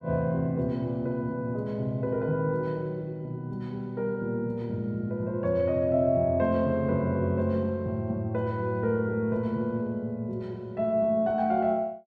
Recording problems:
none

